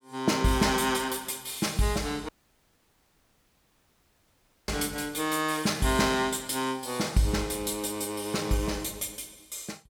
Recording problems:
audio cutting out; at 2.5 s for 2.5 s

